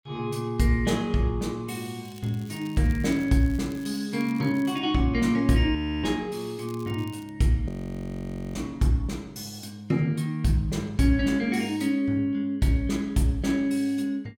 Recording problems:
crackle; from 2 to 5 s and at 6.5 s; loose cable, SNR 25 dB
frozen audio; at 6 s and at 7.5 s for 1 s

